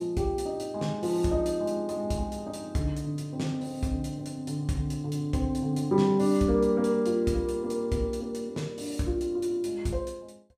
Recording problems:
none

